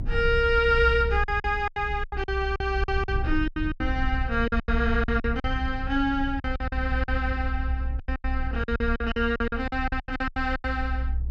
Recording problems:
rumble; below 64 Hz, SNR 4 dB
packet loss; 16% of the sound replaced, filled with silence

